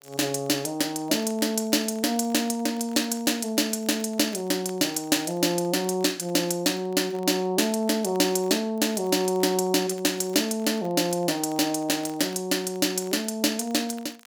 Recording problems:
crackle; vinyl, SNR 28 dB

